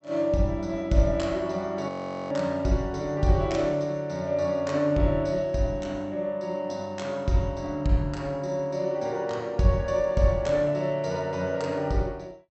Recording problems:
treble missing; nothing above 8 kHz
audio freezing; at 2 s

